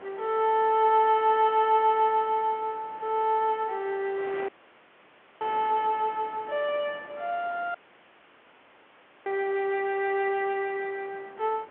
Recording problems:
telephone audio; 280 Hz to 3.5 kHz, G.711
wind on the microphone; below 1.6 kHz, SNR 21 dB
audio cutting out; at 4.5 s for 1 s and at 8 s for 1.5 s

